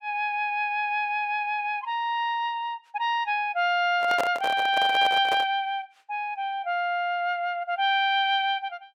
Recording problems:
microphone handling noise; from 4 to 5.5 s; peak +1 dB vs average level

